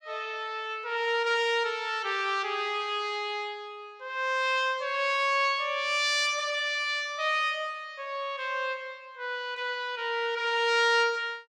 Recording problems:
none

